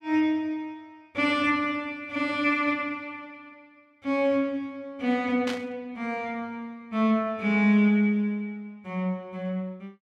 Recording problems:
static burst; at 5.5 s; peak -4 dB vs average level

